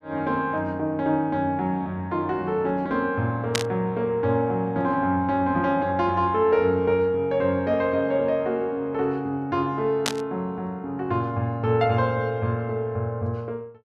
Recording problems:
static burst; at 3.5 s and at 10 s; peak +4 dB vs average level

